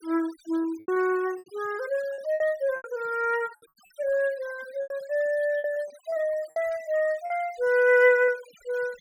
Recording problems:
denoising artefacts; signal-to-artefact ratio 23 dB
packet loss; 8% of the sound replaced, filled with repeated pitch periods

